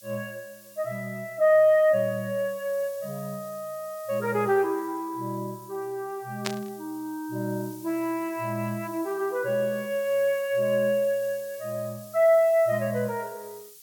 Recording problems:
background hiss; SNR 20 dB
burst of static; at 6.5 s; peak +1 dB vs average level

